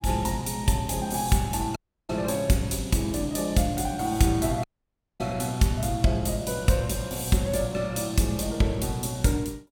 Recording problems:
dropout; at 2 s and at 4.5 s for 0.5 s

